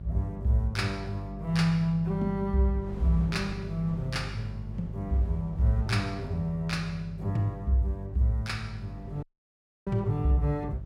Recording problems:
electrical hum; 50 Hz, harmonics up to 400 Hz, SNR 11 dB
wind noise; below 320 Hz, SNR 20 dB
audio cutting out; at 9 s for 0.5 s

